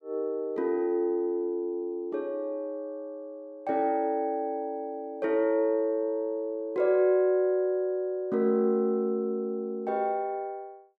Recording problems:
none

